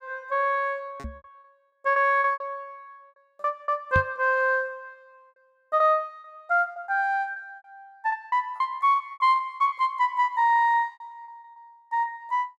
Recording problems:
lost packets; 11% of the sound replaced, filled with repeated pitch periods
knock on the microphone; at 1 s and at 4 s; peak +1 dB vs average level

